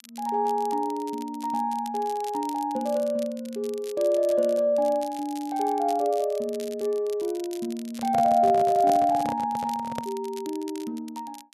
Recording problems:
crackle; vinyl, SNR 20 dB
microphone handling noise; from 8 to 10 s; peak -4 dB vs average level

